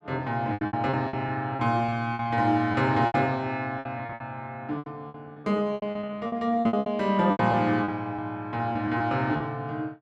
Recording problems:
packet loss; 16% of the sound replaced, filled with repeated pitch periods

